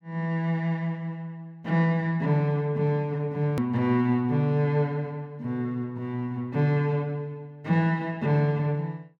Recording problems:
edit click; at 3.5 s

